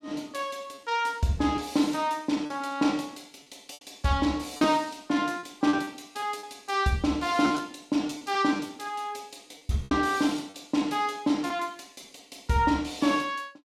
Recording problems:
packet loss; 7% of the sound replaced, filled with repeated pitch periods

